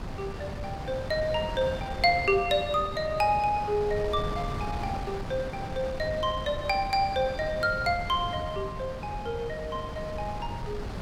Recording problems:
wind on the microphone; below 490 Hz, SNR 8 dB

